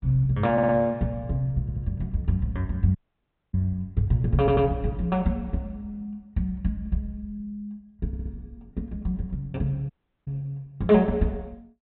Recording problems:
treble missing; nothing above 4 kHz
stutter; 4 times, first at 0.5 s
dropout; at 3 s for 0.5 s and at 10 s

